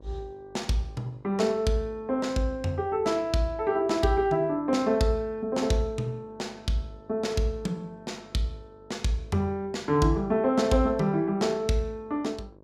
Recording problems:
electrical hum; 50 Hz, harmonics up to 1.2 kHz, SNR 26 dB

